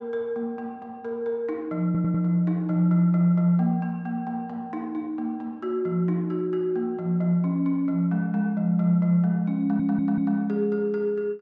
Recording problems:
stutter; at 2 s and at 9.5 s

